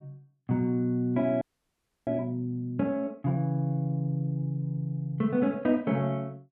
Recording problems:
audio freezing; at 1.5 s for 0.5 s

